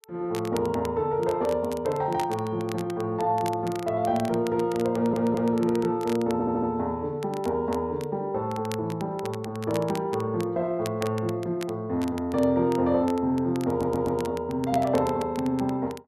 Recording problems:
crackle; vinyl, SNR 18 dB
audio stuttering; at 5 s, at 6.5 s and at 14 s

